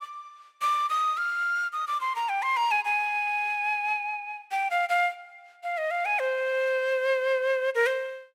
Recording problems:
none

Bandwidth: 16 kHz